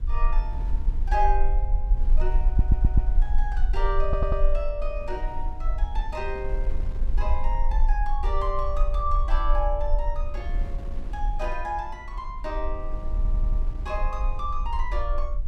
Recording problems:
low-frequency rumble; below 44 Hz, strongest tone 22 Hz, SNR -4 dB
wind on the microphone; below 220 Hz, SNR 13 dB
audio stuttering; at 2.5 s, at 4 s and at 13 s

